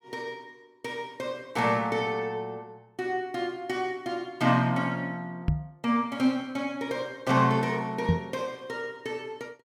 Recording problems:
knock on the microphone; at 5.5 s and at 8 s; peak +8 dB vs average level

